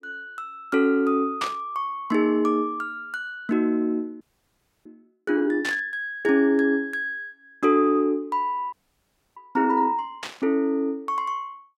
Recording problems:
burst of static; at 1.5 s, at 5.5 s and at 10 s; peak -2 dB vs average level
frozen audio; at 4 s for 0.5 s and at 8.5 s for 0.5 s

